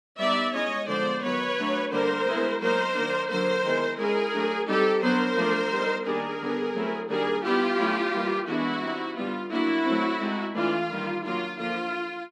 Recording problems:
none

